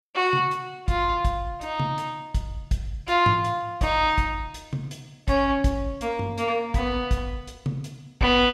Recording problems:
none

